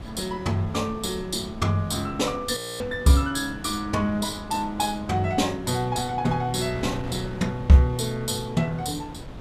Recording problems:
wind noise; below 440 Hz, SNR 14 dB
frozen audio; at 2.5 s

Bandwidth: 14.5 kHz